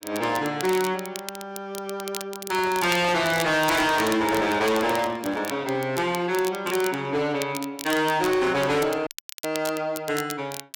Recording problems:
distorted audio; hard clipping, signal-to-distortion ratio 10 dB
crackle; vinyl, SNR 13 dB
microphone handling noise; from 2.5 to 5.5 s; peak -6 dB vs average level
audio cutting out; at 9 s

